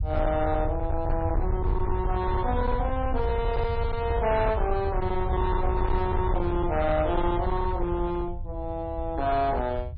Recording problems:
codec artefacts; MP3, log-spectral distance 2 dB, nothing above 4.9 kHz
distortion; hard clipping, uneven, signal-to-distortion ratio 11 dB
low-frequency rumble; below 86 Hz, SNR 3 dB

